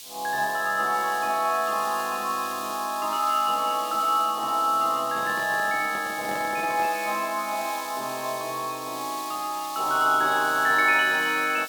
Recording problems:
hiss; SNR 13 dB
handling noise; from 5 to 7 s; peak -9 dB vs average level

